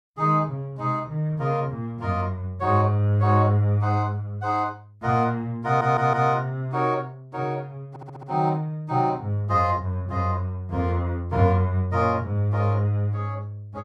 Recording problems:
stutter; at 5.5 s and at 8 s

